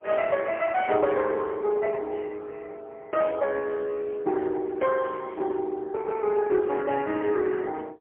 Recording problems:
phone line; 320 Hz to 3.2 kHz, AMR-NB, then MP3

